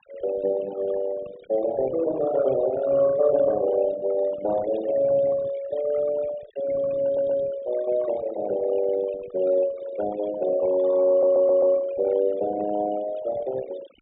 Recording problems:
treble cut off; nothing above 4 kHz
denoising artefacts; signal-to-artefact ratio 16 dB
stutter; at 7 s and at 11 s

